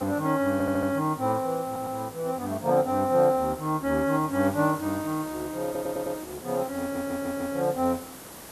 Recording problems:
background hiss; slope -4 dB per octave, SNR 16 dB
audio stuttering; 4 times, first at 0.5 s

